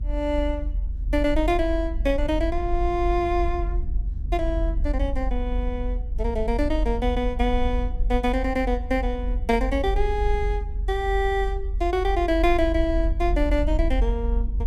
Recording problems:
low-frequency rumble; below 50 Hz, strongest tone 44 Hz, SNR 3 dB

